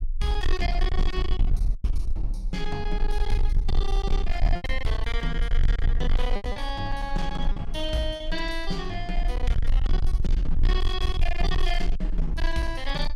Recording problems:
distorted audio; hard clipping, uneven, signal-to-distortion ratio 6 dB
rumble; below 42 Hz, strongest tone 22 Hz, SNR -2 dB
packet loss; 3% of the sound replaced, filled with repeated pitch periods

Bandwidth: 16 kHz